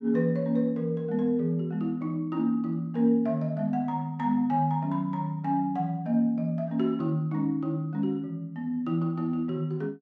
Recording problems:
none

